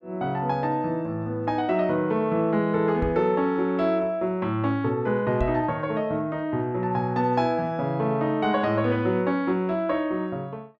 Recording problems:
knock on the microphone; at 3 s and at 5.5 s; peak -1 dB vs average level

